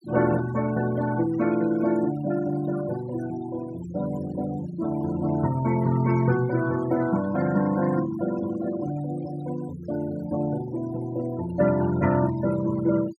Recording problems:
denoising artefacts; signal-to-artefact ratio 16 dB

